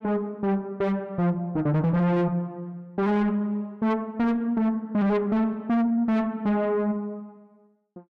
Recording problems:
distortion; soft clipping, signal-to-distortion ratio 7 dB

